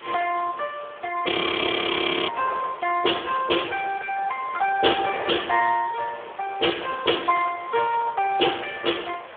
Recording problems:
telephone audio; 340 Hz to 3.4 kHz, Speex
background hiss; SNR 23 dB
wind on the microphone; below 1.4 kHz, SNR 16 dB
audio freezing; at 1.5 s for 1 s

